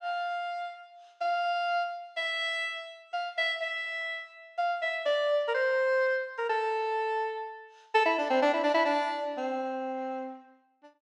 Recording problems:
none

